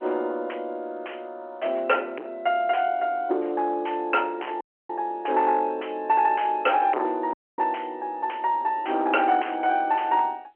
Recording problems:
telephone audio; 320 Hz to 3.1 kHz, G.711
distorted audio; soft clipping, signal-to-distortion ratio 6 dB
dropout; at 4.5 s and at 7.5 s

